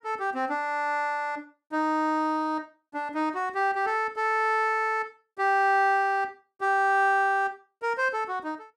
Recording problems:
none

